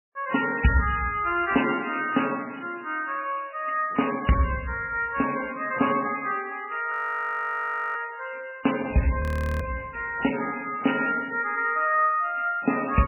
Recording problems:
lossy compression; MP3, log-spectral distance 8 dB, nothing above 19.5 kHz
frozen audio; at 7 s for 1 s and at 9 s

